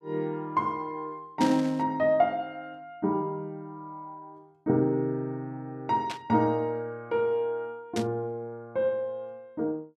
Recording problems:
static burst; at 1.5 s, at 6 s and at 8 s; peak -2 dB vs average level

